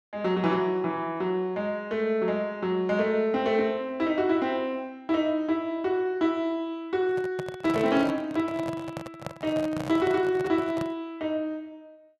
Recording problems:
handling noise; from 7 to 11 s; peak -4 dB vs average level

